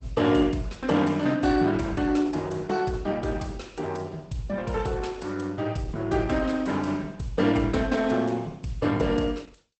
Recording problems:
codec artefacts; Opus, log-spectral distance 4 dB, nothing above 8.2 kHz

